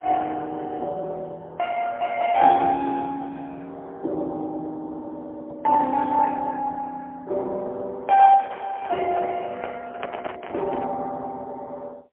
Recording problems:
telephone audio; 280 Hz to 3.2 kHz, AMR-NB, then MP3
handling noise; from 8 to 11 s; peak -7 dB vs average level

